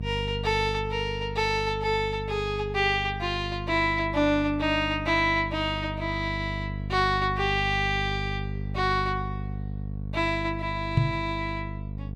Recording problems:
electrical hum; 50 Hz, harmonics up to 500 Hz, SNR 8 dB
microphone thump; at 11 s; peak +8 dB vs average level

